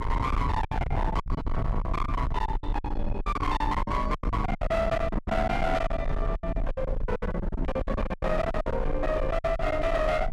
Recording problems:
distortion; hard clipping, signal-to-distortion ratio 8 dB
rumble; below 100 Hz, SNR 3 dB
wind noise; below 550 Hz, SNR 17 dB
packet loss; 19% of the sound replaced, filled with silence

